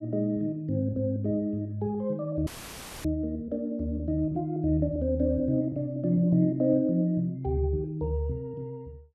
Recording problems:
audio cutting out; at 2.5 s for 0.5 s; filled with static

